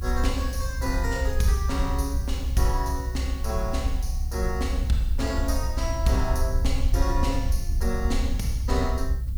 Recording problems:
background hiss; slope +5 dB per octave, SNR 21 dB
low-frequency rumble; below 66 Hz, SNR -2 dB

